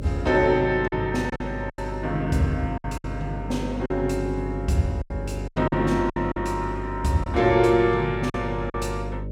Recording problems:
hum; 50 Hz, harmonics up to 600 Hz, SNR 9 dB
lost packets; 8% of the sound replaced, filled with silence

